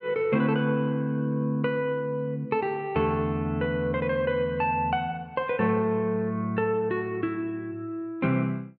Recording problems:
none

